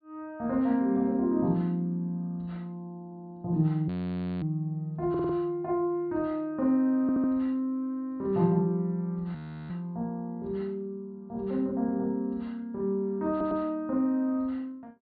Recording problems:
treble cut off; nothing above 4.6 kHz
audio stuttering; 4 times, first at 3 s
audio freezing; at 4 s for 0.5 s and at 9.5 s

